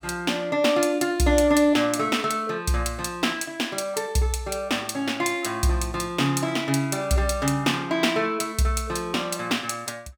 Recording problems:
none

